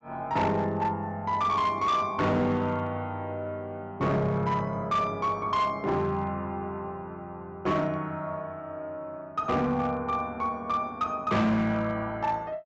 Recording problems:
treble missing; nothing above 8 kHz
distortion; hard clipping, signal-to-distortion ratio 11 dB

